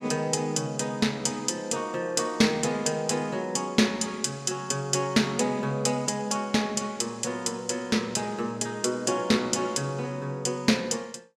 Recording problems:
none

